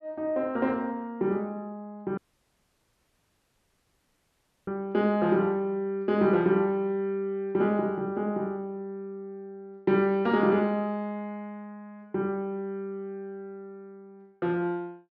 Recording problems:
dropout; at 2 s for 2.5 s

